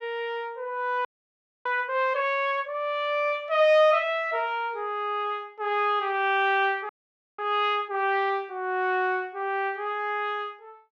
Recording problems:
audio freezing; at 1 s for 0.5 s and at 7 s

